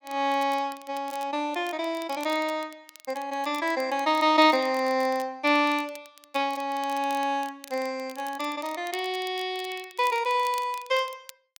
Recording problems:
crackle; vinyl, SNR 21 dB

